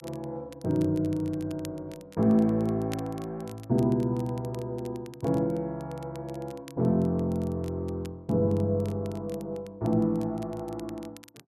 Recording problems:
crackling; vinyl, SNR 24 dB

